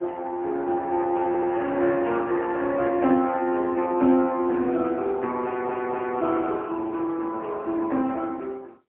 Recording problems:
phone line; 220 Hz to 3.5 kHz, AMR-NB, then MP3
audio stuttering; at 1.5 s and at 5.5 s

